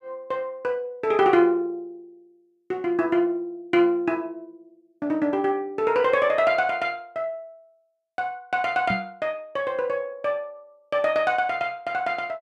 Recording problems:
knock on the microphone; at 9 s; peak -2 dB vs average level

